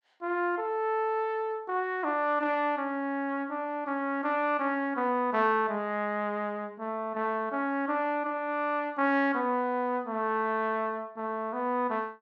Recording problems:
none

